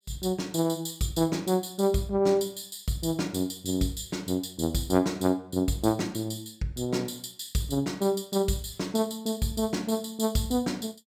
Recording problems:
none

